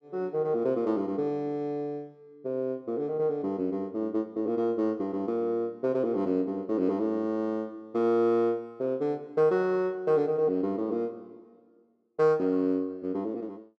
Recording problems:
none

